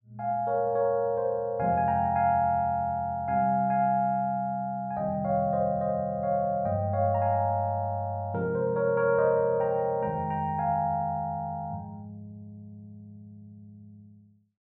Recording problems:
none

